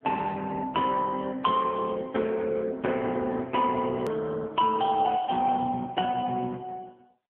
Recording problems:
phone line; 190 Hz to 3 kHz, AMR-NB
edit click; at 4 s

